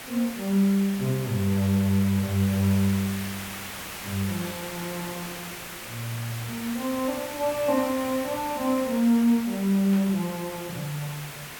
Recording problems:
hiss; SNR 10 dB
burst of static; at 4.5 s and at 10 s; peak -13 dB vs average level

